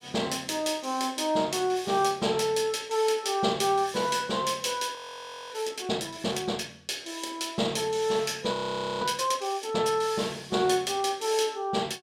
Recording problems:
frozen audio; at 5 s for 0.5 s and at 8.5 s

